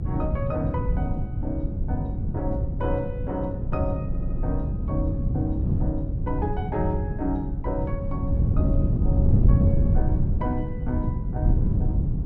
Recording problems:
rumble; below 86 Hz, SNR 8 dB
wind on the microphone; below 140 Hz, SNR -6 dB
stutter; at 4 s

